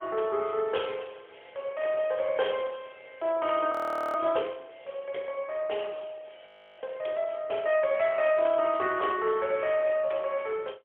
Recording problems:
phone line; 340 Hz to 3.4 kHz, AMR-NB, then MP3
audio freezing; at 3.5 s and at 6.5 s

